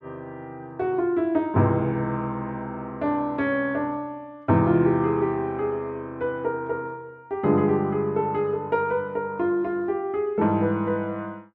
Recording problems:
none

